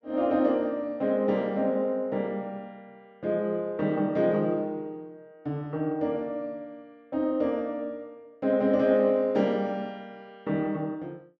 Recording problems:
none

